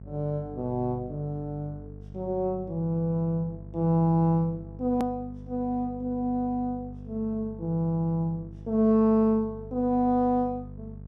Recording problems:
mains hum; 50 Hz, harmonics up to 650 Hz, SNR 15 dB
hard cut with a click; at 5 s

